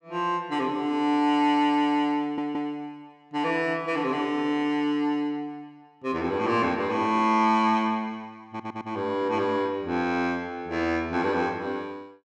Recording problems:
audio stuttering; at 2 s and at 8.5 s

